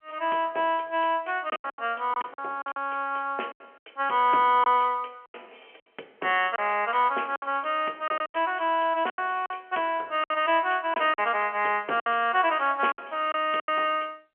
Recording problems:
telephone audio; 300 Hz to 3.3 kHz, G.711
packet loss; 9% of the sound replaced, filled with silence

